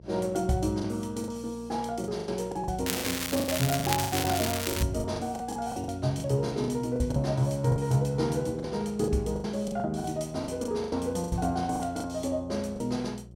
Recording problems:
hum; 60 Hz, harmonics up to 720 Hz, SNR 20 dB
packet loss; 13% of the sound replaced, filled with the last packet
crackling; from 3 to 5 s; loose cable, SNR 2 dB

